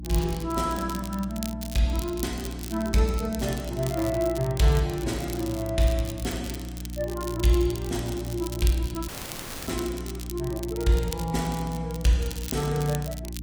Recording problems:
lossy codec; AAC, log-spectral distance 2 dB, nothing above 15.5 kHz
mains hum; 60 Hz, harmonics up to 300 Hz, SNR 9 dB
crackling; vinyl, SNR 13 dB
dropout; at 9 s for 0.5 s

